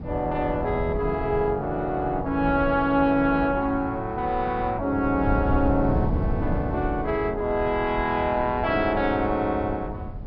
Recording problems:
treble cut off; nothing above 5.5 kHz
wind on the microphone; below 170 Hz, SNR 8 dB

